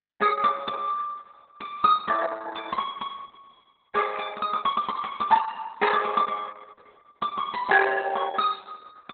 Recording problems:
lossy compression; Opus, log-spectral distance 5 dB, nothing above 3.8 kHz

